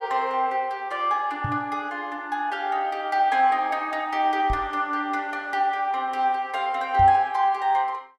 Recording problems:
microphone bump; at 1.5 s, at 4.5 s and at 7 s; peak -2 dB vs average level

